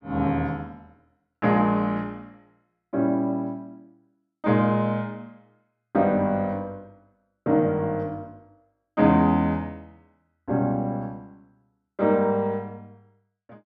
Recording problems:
none

